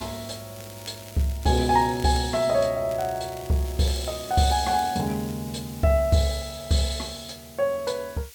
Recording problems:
background hiss; slope +3 dB per octave, SNR 20 dB
crackling; from 0.5 to 2 s and from 3 to 5.5 s; loose cable, SNR 21 dB

